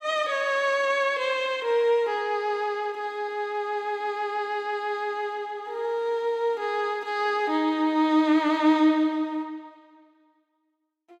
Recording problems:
none

